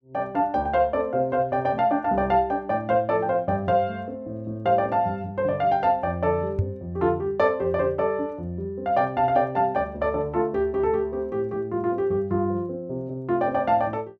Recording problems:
microphone bump; at 6.5 s; peak +4 dB vs average level

